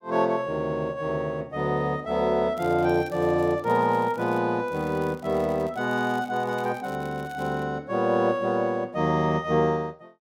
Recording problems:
crackling; from 2.5 to 4.5 s and from 4.5 to 7.5 s; loose cable, SNR 27 dB

